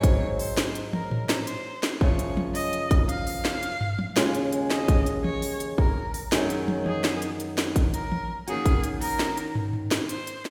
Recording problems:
none

